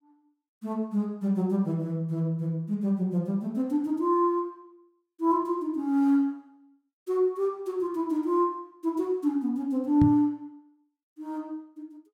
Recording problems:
knock on the microphone; at 10 s; peak +5 dB vs average level

